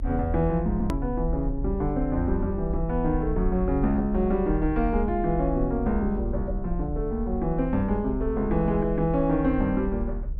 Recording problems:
low-frequency rumble; below 60 Hz, strongest tone 38 Hz, SNR 7 dB
hard cut with a click; at 1 s

